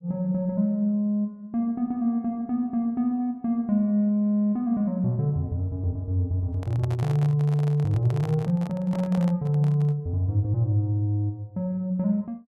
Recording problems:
microphone handling noise; from 6.5 to 10 s; peak -9 dB vs average level

